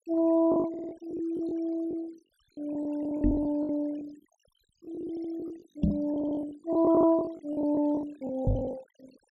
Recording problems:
noise reduction artefacts; signal-to-artefact ratio 23 dB
lost packets; 16% of the sound replaced, filled with the last packet
audio stuttering; at 0.5 s, at 5 s and at 6 s
microphone bump; at 3 s, at 6 s and at 8.5 s; peak +7 dB vs average level

